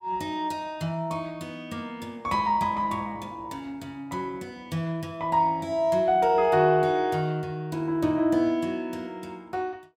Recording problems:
none

